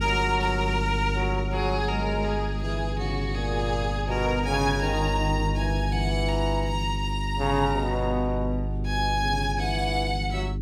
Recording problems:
hum; 50 Hz, harmonics up to 400 Hz, SNR 2 dB

